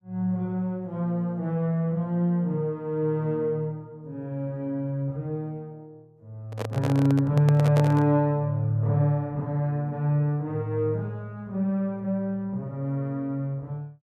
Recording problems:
microphone handling noise; from 6.5 to 8 s; peak 0 dB vs average level

